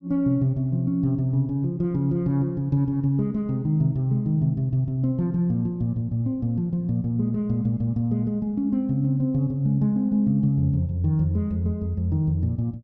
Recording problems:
none

